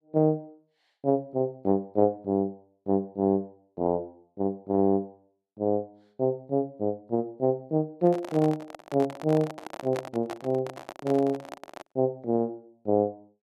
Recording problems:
handling noise; from 8 to 12 s; peak -4 dB vs average level

